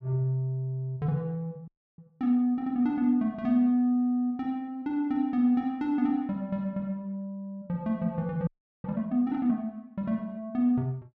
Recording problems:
frozen audio; at 1.5 s and at 8.5 s

